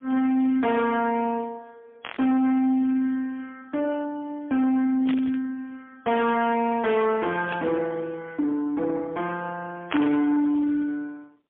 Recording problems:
phone line; 190 Hz to 2.6 kHz, AMR-NB, then MP3
distorted audio; soft clipping, signal-to-distortion ratio 9 dB
static burst; 4 times, first at 2 s; peak -2 dB vs average level

